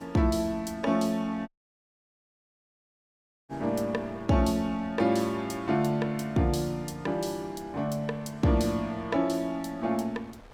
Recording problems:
wind noise; below 1.1 kHz, SNR 25 dB
dropout; at 1.5 s for 2 s

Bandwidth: 16.5 kHz